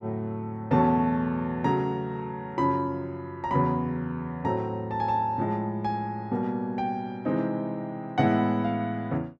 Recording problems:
none

